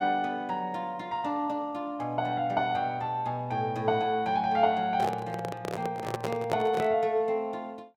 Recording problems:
handling noise; from 5 to 7 s; peak +1 dB vs average level

